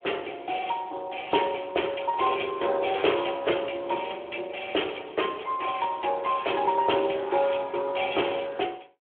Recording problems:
telephone audio; 300 Hz to 3.3 kHz, Speex

